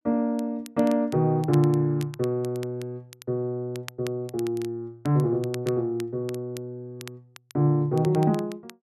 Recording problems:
crackling; vinyl, SNR 21 dB

